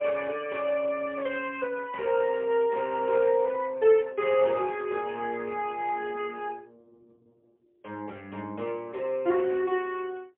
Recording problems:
phone line; 240 Hz to 3.3 kHz, AMR-NB, then MP3

